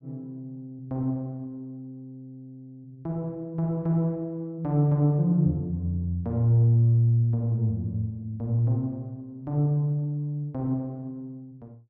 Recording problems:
none

